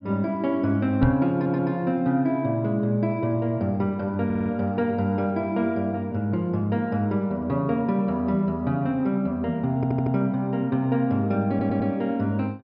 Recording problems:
low-pass filter; nothing above 5.5 kHz
knock on the microphone; at 1 s; peak +6 dB vs average level
stutter; 4 times, first at 1.5 s

